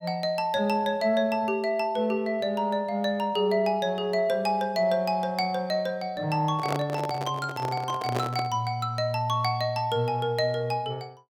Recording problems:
microphone handling noise; from 6.5 to 8.5 s; peak 0 dB vs average level

